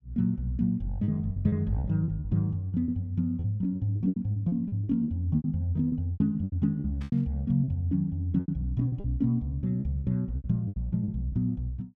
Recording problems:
lost packets; 14% of the sound replaced, filled with repeated pitch periods
burst of static; at 7 s; peak -16 dB vs average level

